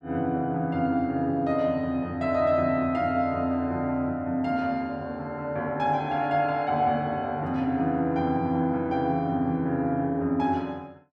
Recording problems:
none

